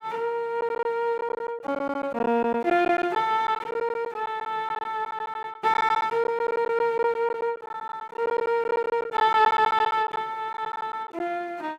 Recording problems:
packet loss; 11% of the sound replaced, filled with silence

